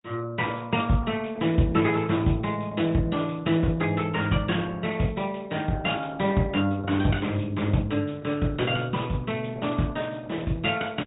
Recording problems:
treble cut off; nothing above 3.8 kHz
lossy compression; Opus, log-spectral distance 4 dB

